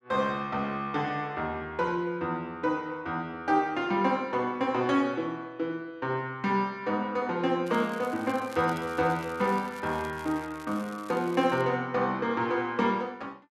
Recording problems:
crackling; from 7.5 to 12 s; loose cable, SNR 22 dB

